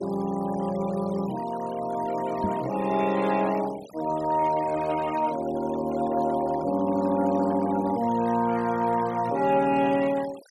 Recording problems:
noise reduction artefacts; signal-to-artefact ratio 19 dB
knock on the microphone; at 2.5 s; peak 0 dB vs average level

